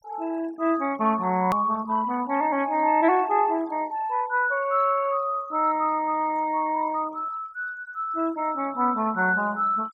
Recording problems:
noise reduction artefacts; signal-to-artefact ratio 23 dB
click at an edit; at 1.5 s

